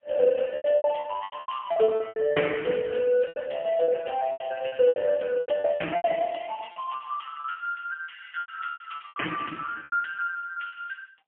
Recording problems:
telephone audio; 220 Hz to 3.2 kHz, AMR-NB, then MP3
lost packets; 16% of the sound replaced, filled with repeated pitch periods

